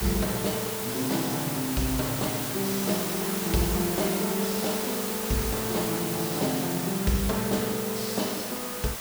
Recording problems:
hiss; SNR 2 dB

